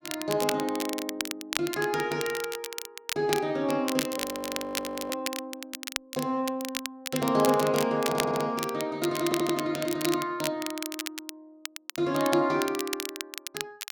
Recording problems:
crackling; vinyl, SNR 6 dB
audio freezing; at 4 s for 1 s
audio stuttering; at 8 s and at 9 s

